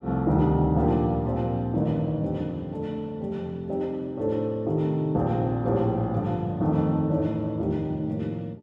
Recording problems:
none

